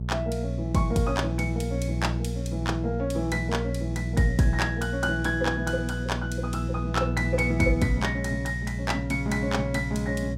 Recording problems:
electrical hum; 60 Hz, harmonics up to 420 Hz, SNR 3 dB

